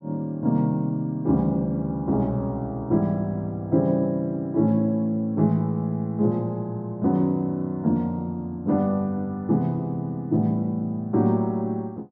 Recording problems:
none

